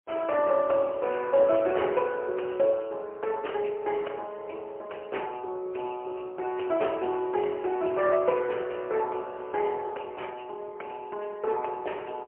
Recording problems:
telephone audio; 320 Hz to 3.1 kHz, AMR-NB, then MP3

